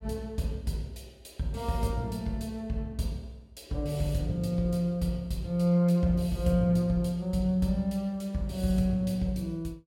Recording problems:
none

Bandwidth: 16 kHz